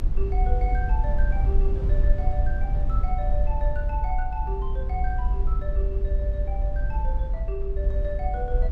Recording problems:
low-frequency rumble; below 54 Hz, SNR -8 dB

